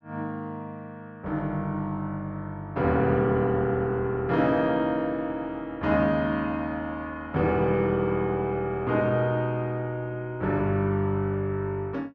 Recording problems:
none

